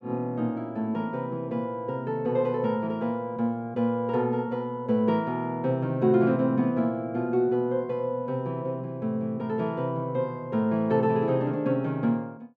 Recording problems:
none

